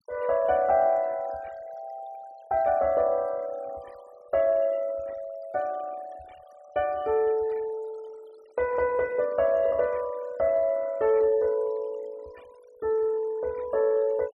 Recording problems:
denoising artefacts; signal-to-artefact ratio 26 dB

